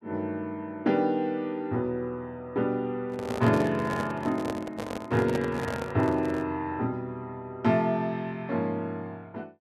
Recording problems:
microphone handling noise; from 3 to 6.5 s; peak -1 dB vs average level

